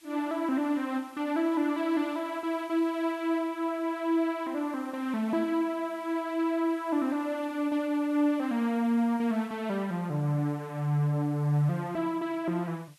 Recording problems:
background hiss; slope +2 dB per octave, SNR 28 dB

